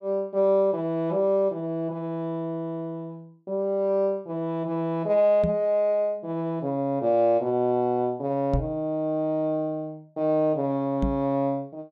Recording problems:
knock on the microphone; at 5.5 s, at 8.5 s and at 11 s; peak +2 dB vs average level

